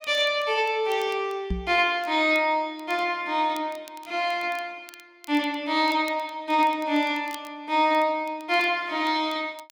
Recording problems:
crackle; vinyl, SNR 26 dB
knock on the microphone; at 1.5 s; peak 0 dB vs average level

